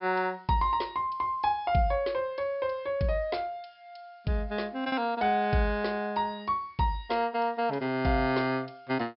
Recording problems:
low-pass filter; nothing above 5.3 kHz
packet loss; 0.5% of the sound replaced, filled with repeated pitch periods

